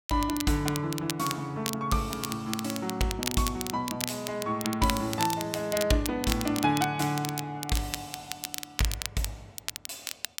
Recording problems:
crackle; vinyl, SNR 6 dB

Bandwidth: 16.5 kHz